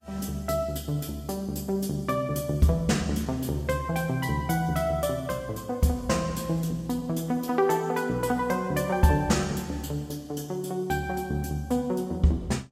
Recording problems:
lossy codec; Vorbis, log-spectral distance 3 dB, nothing above 13.8 kHz

